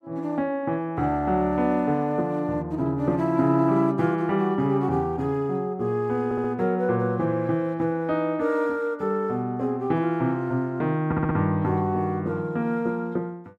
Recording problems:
stutter; at 6.5 s and at 11 s

